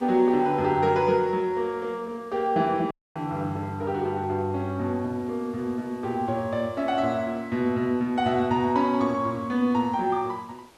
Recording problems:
hiss; slope -4 dB per octave, SNR 29 dB
dropout; at 3 s

